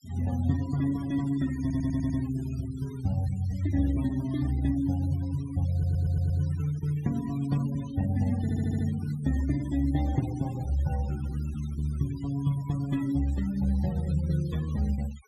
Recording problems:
denoising artefacts; signal-to-artefact ratio 20 dB
stutter; at 1.5 s, at 5.5 s and at 8.5 s

